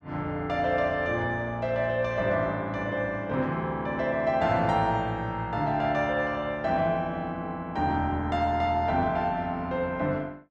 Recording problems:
none

